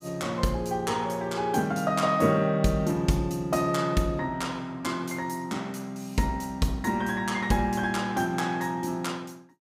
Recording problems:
none

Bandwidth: 15.5 kHz